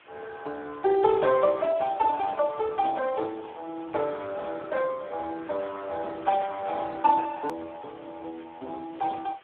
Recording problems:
telephone audio; 260 Hz to 3.1 kHz, Speex
hiss; SNR 26 dB
hard cut with a click; at 7.5 s

